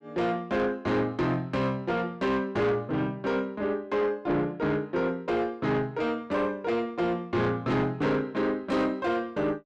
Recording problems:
distortion; soft clipping, signal-to-distortion ratio 10 dB

